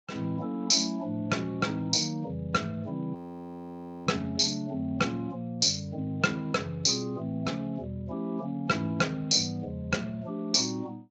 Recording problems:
lossy compression; Speex, log-spectral distance 4 dB, nothing above 18 kHz
audio freezing; at 3 s for 1 s

